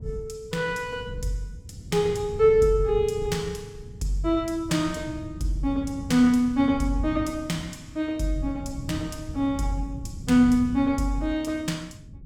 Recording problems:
wind on the microphone; below 150 Hz, SNR 13 dB

